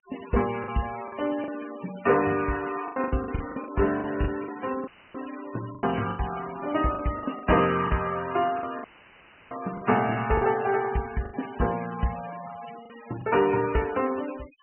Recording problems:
treble cut off; nothing above 3 kHz
denoising artefacts; signal-to-artefact ratio 15 dB
packet loss; 9% of the sound replaced, filled with the last packet
audio cutting out; at 5 s and at 9 s for 0.5 s; filled with static

